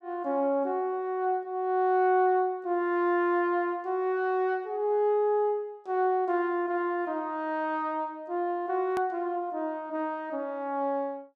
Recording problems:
click at an edit; at 9 s

